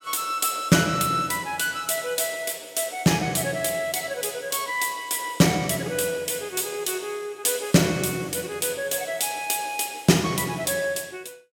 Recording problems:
none

